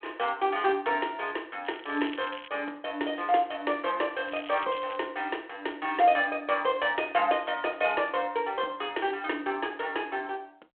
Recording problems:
phone line; 260 Hz to 3.4 kHz, G.726
crackling; at 1.5 s and at 4.5 s; loose cable, SNR 16 dB

